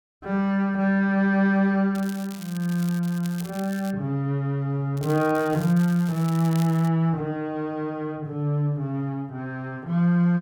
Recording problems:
crackling; from 2 to 4 s and from 5 to 7 s; loose cable, SNR 19 dB

